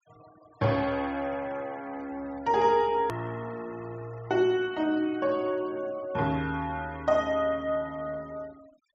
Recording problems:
treble cut off; nothing above 8 kHz
noise reduction artefacts; signal-to-artefact ratio 23 dB
click at an edit; at 3 s

